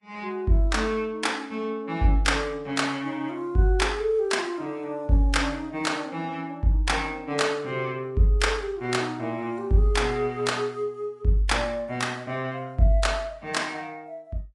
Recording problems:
codec artefacts; Vorbis, log-spectral distance 2 dB, nothing above 10.7 kHz

